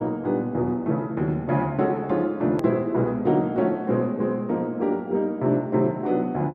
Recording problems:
edit click; at 2.5 s

